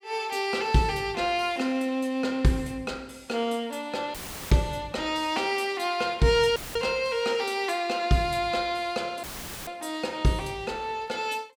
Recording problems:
dropout; at 4 s, at 6.5 s and at 9 s; filled with static

